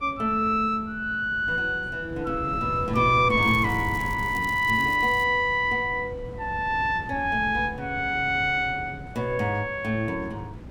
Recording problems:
wind noise; below 260 Hz, SNR 15 dB
crackling; from 3.5 to 5 s; loose cable, SNR 22 dB

